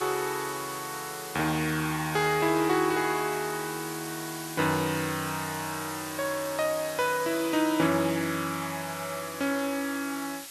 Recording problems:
background hiss; slope +3 dB per octave, SNR 10 dB

